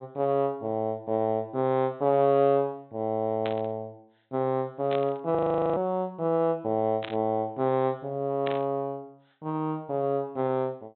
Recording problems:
low-pass filter; nothing above 3.9 kHz
burst of static; 4 times, first at 3.5 s; peak -5 dB vs average level
audio freezing; at 5.5 s

